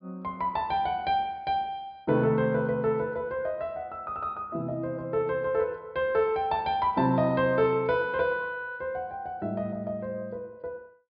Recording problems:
treble missing; nothing above 5.5 kHz

